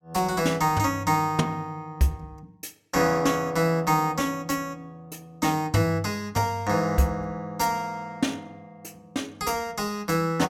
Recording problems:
none

